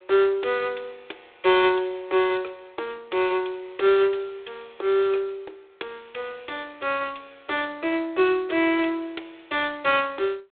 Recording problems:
telephone audio; 300 Hz to 3.8 kHz, G.726

